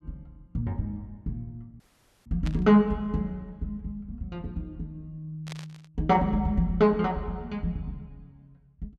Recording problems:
dropout; at 2 s
static burst; at 2.5 s and at 5.5 s; peak -8 dB vs average level

